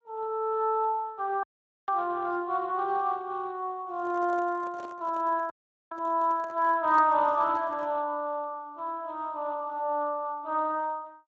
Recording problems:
lossy codec; Speex, log-spectral distance 2 dB
audio cutting out; at 1.5 s and at 5.5 s
handling noise; from 4 to 8 s; peak -9 dB vs average level

